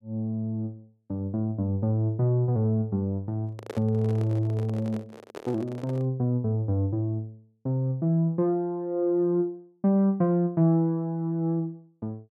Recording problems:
handling noise; from 3.5 to 6 s; peak -5 dB vs average level

